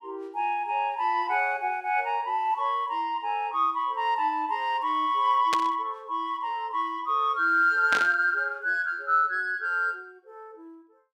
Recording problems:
static burst; at 5.5 s and at 8 s; peak +1 dB vs average level

